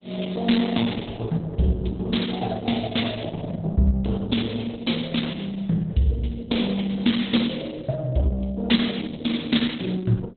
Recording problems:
lossy compression; Opus, log-spectral distance 5 dB, nothing above 4 kHz

